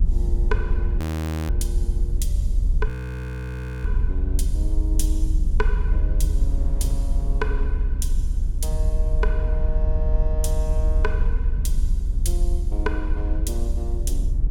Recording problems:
rumble; below 66 Hz, strongest tone 24 Hz, SNR -9 dB
wind noise; below 300 Hz, SNR 16 dB
frozen audio; at 1 s for 0.5 s and at 3 s for 1 s

